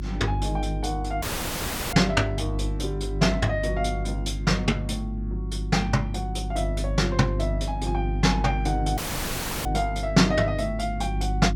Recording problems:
hum; 50 Hz, harmonics up to 350 Hz, SNR 4 dB
audio cutting out; at 1 s for 0.5 s and at 9 s for 0.5 s

